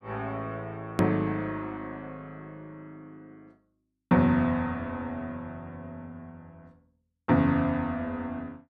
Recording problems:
hard cut with a click; at 1 s

